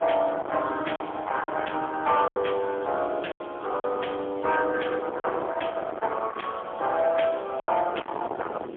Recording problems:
phone line; 280 Hz to 3.4 kHz, AMR-NB, then MP3
distorted audio; soft clipping, signal-to-distortion ratio 7 dB
background hiss; SNR 27 dB
wind on the microphone; below 1.1 kHz, SNR 11 dB
lost packets; 5% of the sound replaced, filled with silence

